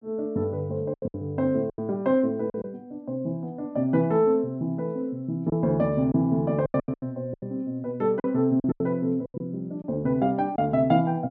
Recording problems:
lost packets; 8% of the sound replaced, filled with silence

